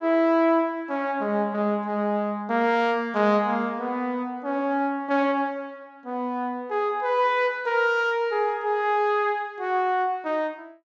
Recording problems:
treble cut off; nothing above 8 kHz

